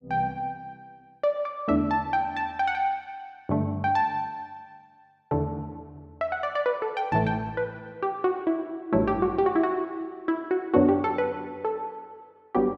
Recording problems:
none

